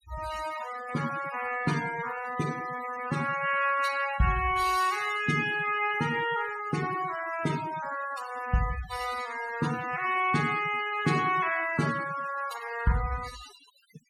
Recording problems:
noise reduction artefacts; signal-to-artefact ratio 12 dB

